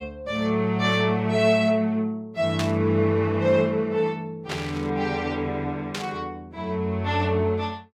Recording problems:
static burst; at 2.5 s, at 4.5 s and at 6 s; peak -1 dB vs average level

